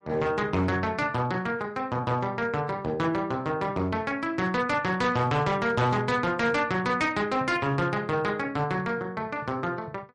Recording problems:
codec artefacts; MP3, log-spectral distance 2 dB
distortion; hard clipping, signal-to-distortion ratio 11 dB

